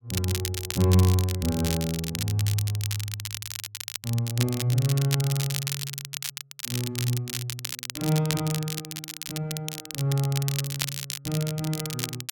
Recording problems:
crackling; vinyl, SNR 5 dB

